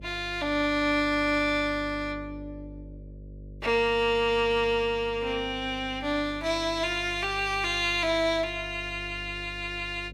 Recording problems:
electrical hum; 50 Hz, harmonics up to 600 Hz, SNR 17 dB

